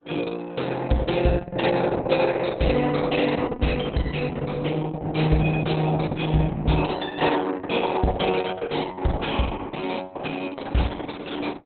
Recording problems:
lossy compression; Opus, log-spectral distance 5 dB, nothing above 4 kHz

